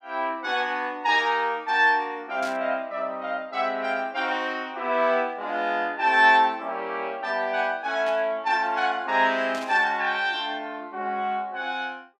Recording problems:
burst of static; at 2.5 s, at 8 s and at 9.5 s; peak -10 dB vs average level

